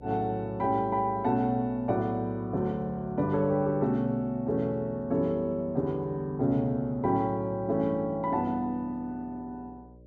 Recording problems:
electrical hum; 60 Hz, harmonics up to 600 Hz, SNR 23 dB

